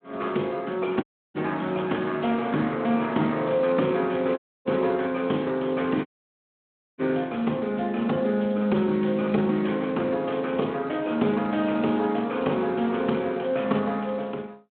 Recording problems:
telephone audio; 170 Hz to 3.6 kHz, Speex
audio cutting out; at 1 s, at 4.5 s and at 6 s for 1 s

